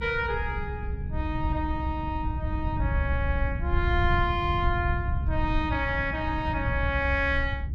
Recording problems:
low-frequency rumble; below 96 Hz, SNR 2 dB
wind on the microphone; below 140 Hz, SNR 9 dB

